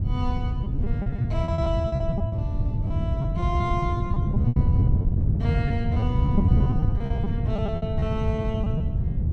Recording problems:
wind noise; below 140 Hz, SNR -8 dB
packet loss; 16% of the sound replaced, filled with repeated pitch periods

